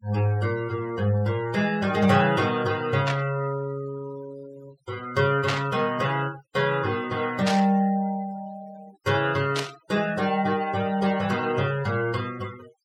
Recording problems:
noise reduction artefacts; signal-to-artefact ratio 20 dB
burst of static; 4 times, first at 3 s; peak +1 dB vs average level

